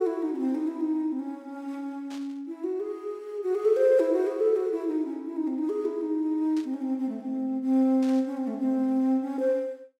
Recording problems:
burst of static; at 2 s, at 6.5 s and at 8 s; peak -14 dB vs average level

